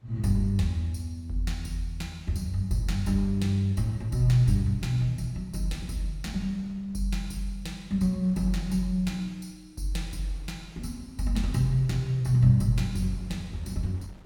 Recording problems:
wind noise; below 360 Hz, SNR 28 dB

